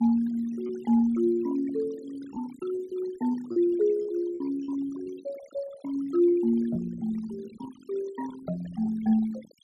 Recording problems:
noise reduction artefacts; signal-to-artefact ratio 19 dB
packet loss; 5% of the sound replaced, filled with repeated pitch periods

